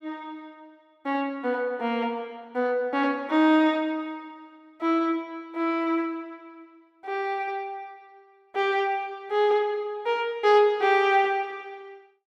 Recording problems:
none

